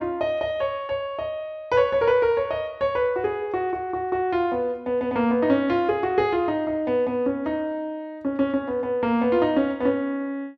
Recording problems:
none

